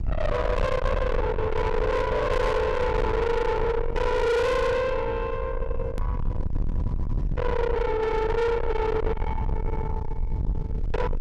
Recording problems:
distortion; soft clipping, signal-to-distortion ratio 6 dB
rumble; below 480 Hz, SNR 4 dB
click at an edit; at 6 s

